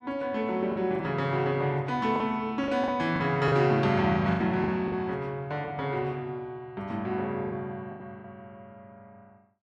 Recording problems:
lost packets; 7% of the sound replaced, filled with the last packet

